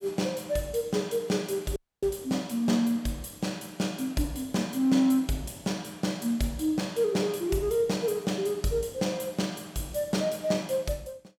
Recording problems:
dropout; at 2 s

